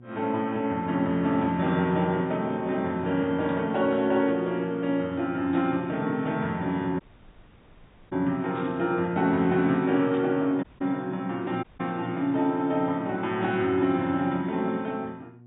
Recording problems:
treble cut off; nothing above 4 kHz
hum; 60 Hz, harmonics up to 720 Hz, SNR 22 dB
static burst; 5 times, first at 3.5 s; peak -14 dB vs average level
dropout; at 7 s for 1 s, at 11 s and at 12 s

